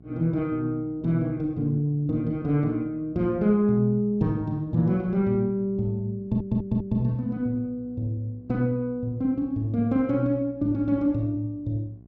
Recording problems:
hum; 60 Hz, harmonics up to 720 Hz, SNR 25 dB
audio stuttering; at 6 s

